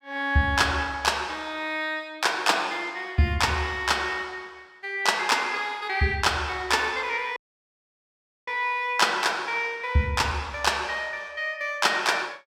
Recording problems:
audio cutting out; at 7.5 s for 1 s

